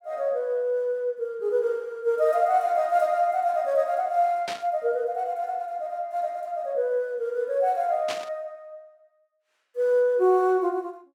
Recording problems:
burst of static; at 4.5 s and at 8 s; peak -3 dB vs average level

